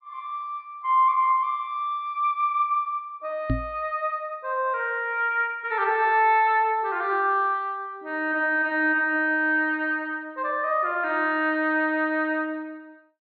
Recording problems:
treble cut off; nothing above 4.8 kHz
microphone bump; at 3.5 s; peak +2 dB vs average level

